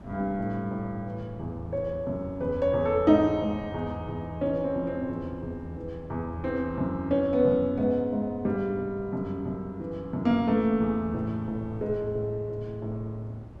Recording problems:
wind noise; below 320 Hz, SNR 19 dB

